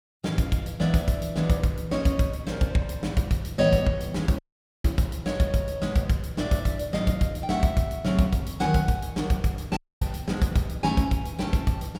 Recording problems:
audio cutting out; at 4.5 s and at 10 s

